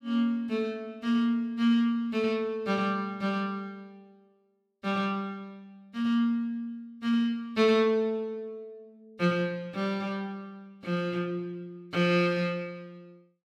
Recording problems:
none

